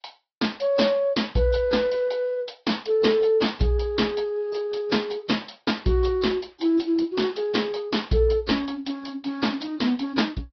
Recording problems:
treble missing; nothing above 5.5 kHz
codec artefacts; AAC, then AAC, log-spectral distance 4 dB

